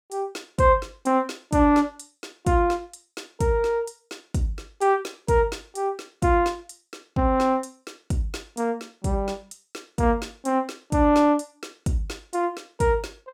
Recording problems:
none

